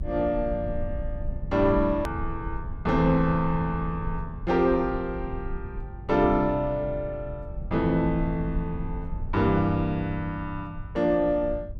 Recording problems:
low-frequency rumble; below 86 Hz, SNR 10 dB
hard cut with a click; at 2 s

